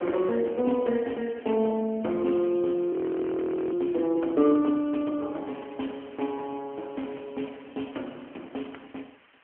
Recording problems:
phone line; 220 Hz to 3.3 kHz, AMR-NB
hiss; SNR 27 dB
frozen audio; at 3 s for 1 s

